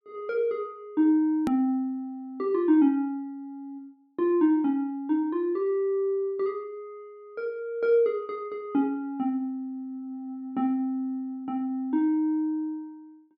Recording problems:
hard cut with a click; at 1.5 s

